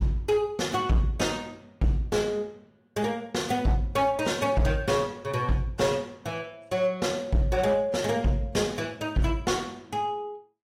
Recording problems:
lossy codec; AAC, log-spectral distance 2 dB, nothing above 15.5 kHz
distorted audio; hard clipping, signal-to-distortion ratio 12 dB

